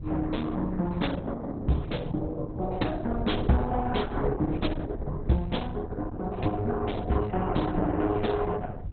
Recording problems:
lossy codec; Opus, then MP2, log-spectral distance 3 dB, nothing above 4 kHz
wind noise; below 96 Hz, SNR 10 dB

